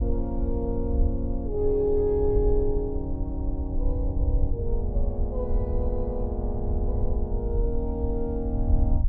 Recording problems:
rumble; below 70 Hz, SNR 0 dB

